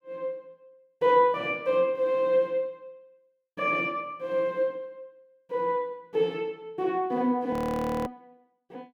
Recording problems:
frozen audio; at 7.5 s for 0.5 s

